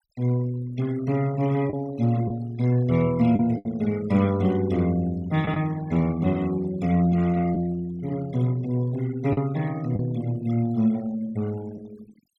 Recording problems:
noise reduction artefacts; signal-to-artefact ratio 21 dB
lost packets; 2% of the sound replaced, filled with the last packet

